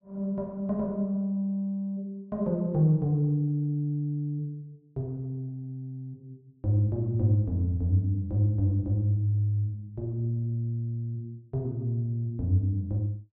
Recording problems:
none

